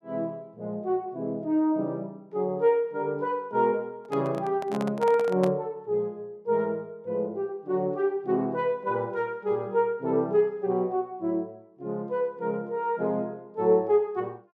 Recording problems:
microphone handling noise; from 4 to 5.5 s; peak -2 dB vs average level

